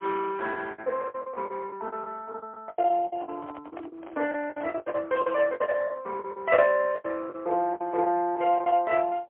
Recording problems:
telephone audio; 320 Hz to 3.2 kHz, AMR-NB, then MP3
packet loss; 17% of the sound replaced, filled with the last packet
handling noise; from 3 to 5 s; peak -11 dB vs average level

